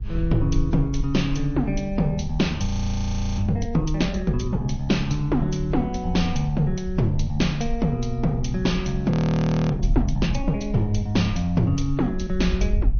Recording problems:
treble cut off; nothing above 6.3 kHz
lossy codec; MP3, log-spectral distance 2 dB
wind on the microphone; below 56 Hz, SNR 8 dB
audio freezing; at 2.5 s for 0.5 s and at 9 s for 0.5 s

